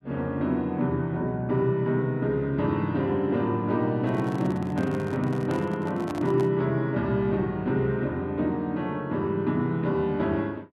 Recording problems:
handling noise; from 4 to 6.5 s; peak -7 dB vs average level

